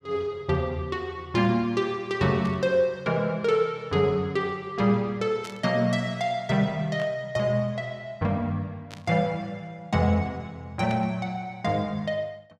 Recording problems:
static burst; 5 times, first at 2.5 s; peak -9 dB vs average level

